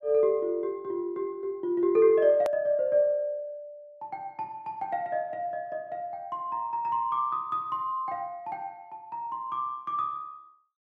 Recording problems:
edit click; at 2.5 s

